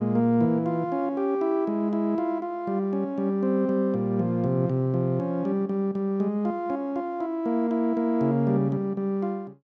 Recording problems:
none

